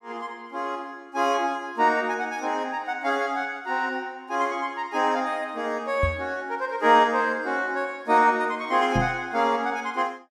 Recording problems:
knock on the microphone; at 6 s and at 9 s; peak +2 dB vs average level

